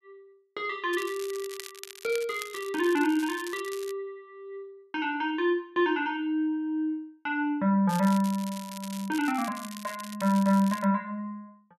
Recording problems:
crackling; from 1 to 4 s and from 8 to 11 s; loose cable, SNR 15 dB

